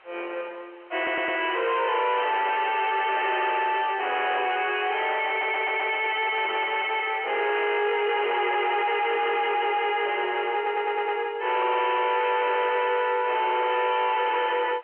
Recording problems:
phone line; 300 Hz to 3.2 kHz, G.711
distortion; soft clipping, signal-to-distortion ratio 4 dB
background hiss; SNR 28 dB
stutter; at 1 s, at 5.5 s and at 11 s

